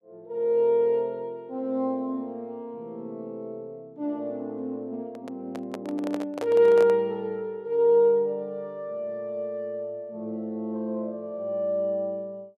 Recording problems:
microphone handling noise; from 5 to 7 s; peak -3 dB vs average level

